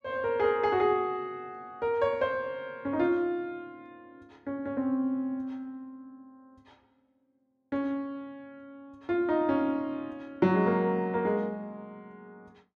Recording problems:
none

